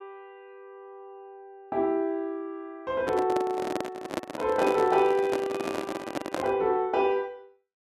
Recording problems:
handling noise; from 3 to 6.5 s; peak +1 dB vs average level

